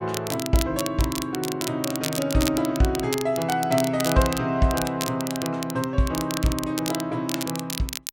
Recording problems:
crackle; vinyl, SNR 7 dB

